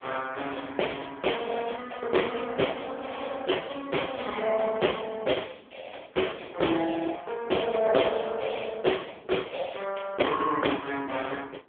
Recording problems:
telephone audio; 300 Hz to 3.4 kHz, AMR-NB
wind noise; below 680 Hz, SNR 23 dB

